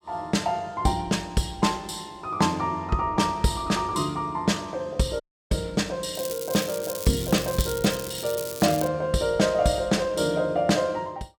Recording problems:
dropout; at 5 s
crackling; from 6 to 9 s; loose cable, SNR 9 dB

